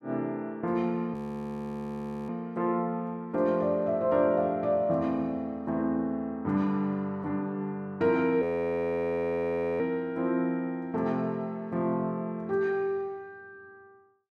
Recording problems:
frozen audio; at 1 s for 1 s and at 8.5 s for 1.5 s

